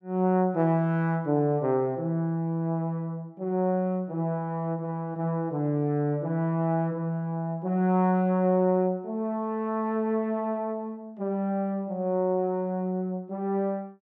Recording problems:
none

